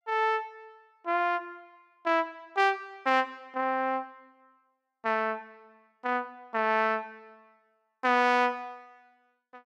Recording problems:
none

